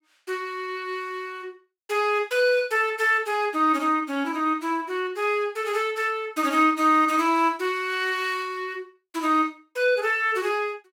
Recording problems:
none

